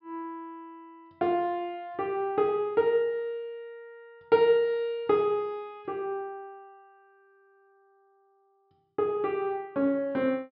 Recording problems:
treble missing; nothing above 5.3 kHz

